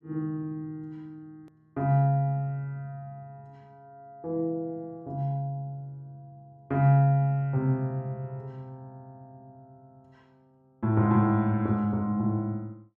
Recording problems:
click at an edit; at 1.5 s

